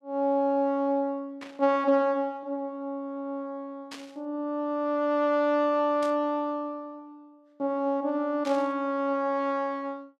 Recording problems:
burst of static; 4 times, first at 1.5 s; peak -9 dB vs average level

